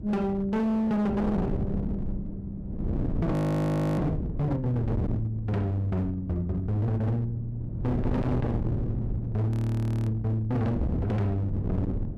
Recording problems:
distorted audio; hard clipping, signal-to-distortion ratio 7 dB
wind on the microphone; below 250 Hz, SNR 5 dB
audio freezing; at 3.5 s for 0.5 s and at 9.5 s for 0.5 s

